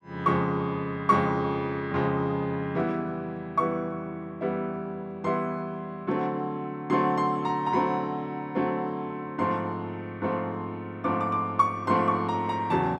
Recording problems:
none

